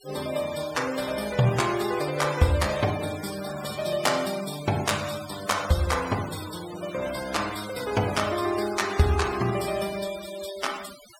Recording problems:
noise reduction artefacts; signal-to-artefact ratio 12 dB

